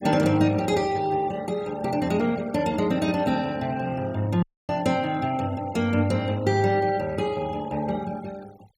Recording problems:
noise reduction artefacts; signal-to-artefact ratio 22 dB
dropout; at 4.5 s

